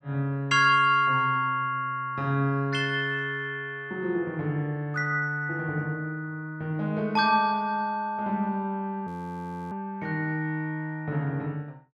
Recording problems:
frozen audio; at 9 s for 0.5 s

